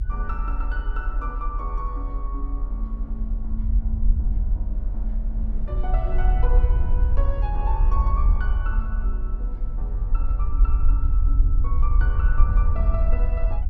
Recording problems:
low-frequency rumble; below 54 Hz, SNR -11 dB
wind on the microphone; below 150 Hz, SNR 8 dB

